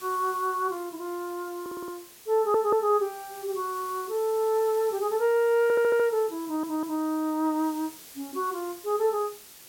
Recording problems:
hiss; SNR 18 dB
audio stuttering; 4 times, first at 1.5 s

